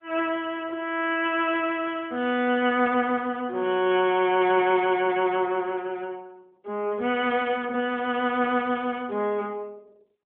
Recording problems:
telephone audio; 220 Hz to 3.4 kHz, AMR-NB

